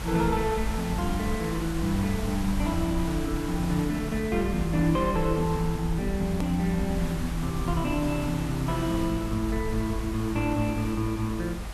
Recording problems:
hiss; slope -3 dB per octave, SNR 11 dB
rumble; below 72 Hz, SNR 8 dB
hard cut with a click; at 6.5 s

